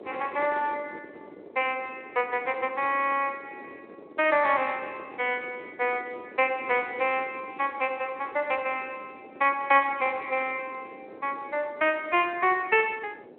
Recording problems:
phone line; 320 Hz to 3.1 kHz, Speex
wind on the microphone; below 530 Hz, SNR 19 dB

